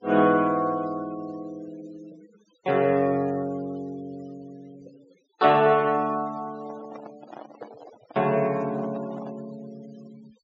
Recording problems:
treble missing; nothing above 7.3 kHz
denoising artefacts; signal-to-artefact ratio 26 dB
handling noise; from 6.5 to 9.5 s; peak -13 dB vs average level

